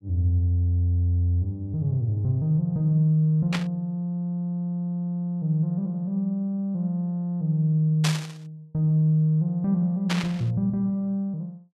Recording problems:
burst of static; at 3.5 s, at 8 s and at 10 s; peak +2 dB vs average level

